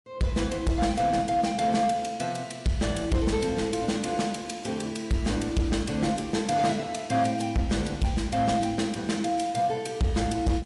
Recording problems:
lossy codec; MP3, log-spectral distance 3 dB, nothing above 11 kHz
distortion; hard clipping, signal-to-distortion ratio 10 dB

